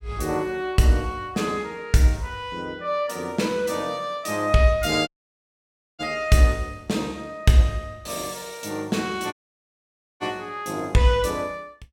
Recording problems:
audio cutting out; at 5 s for 1 s and at 9.5 s for 1 s

